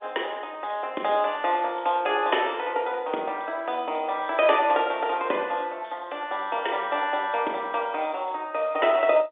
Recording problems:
telephone audio; 260 Hz to 3.6 kHz, G.711

